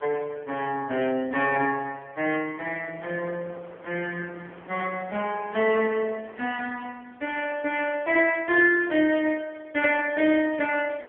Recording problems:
phone line; 320 Hz to 3.2 kHz, AMR-NB
wind noise; below 1.3 kHz, SNR 25 dB

